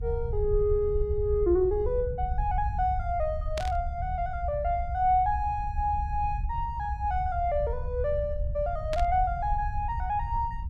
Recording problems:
low-frequency rumble; below 72 Hz, SNR 5 dB
static burst; at 3.5 s and at 9 s; peak -4 dB vs average level

